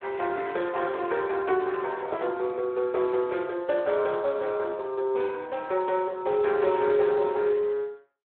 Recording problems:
phone line; 320 Hz to 3.7 kHz, Speex

